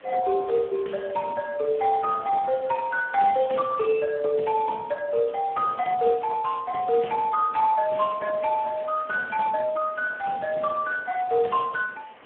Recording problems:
phone line; 220 Hz to 2 kHz, Speex
hiss; SNR 24 dB

